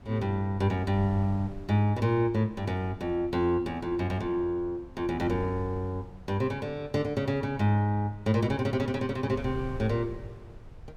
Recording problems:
wind on the microphone; below 130 Hz, SNR 18 dB

